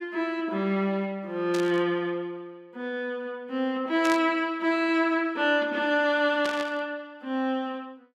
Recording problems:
static burst; at 1.5 s, at 4 s and at 6.5 s; peak -3 dB vs average level

